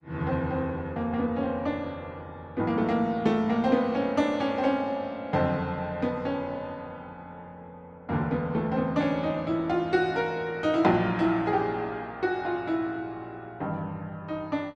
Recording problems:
lossy codec; Opus, log-spectral distance 2 dB

